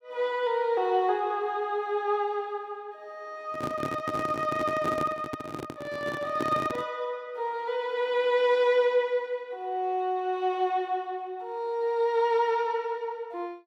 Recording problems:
microphone handling noise; from 3.5 to 7 s; peak 0 dB vs average level

